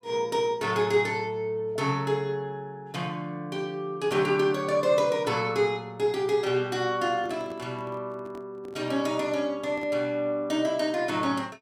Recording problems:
handling noise; from 7 to 10 s; peak -12 dB vs average level

